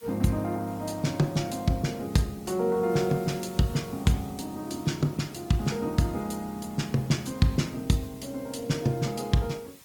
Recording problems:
lossy codec; Opus, log-spectral distance 5 dB, nothing above 18.9 kHz
background hiss; slope 0 dB per octave, SNR 23 dB

